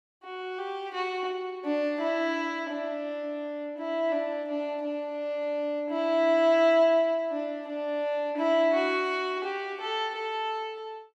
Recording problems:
none

